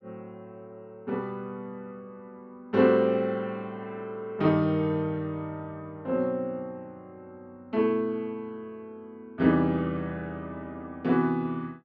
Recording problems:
none

